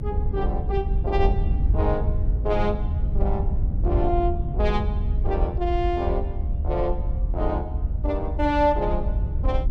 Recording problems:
rumble; below 76 Hz, SNR -1 dB

